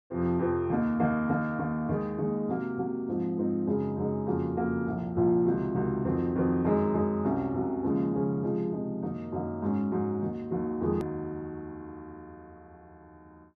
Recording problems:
click at an edit; at 11 s

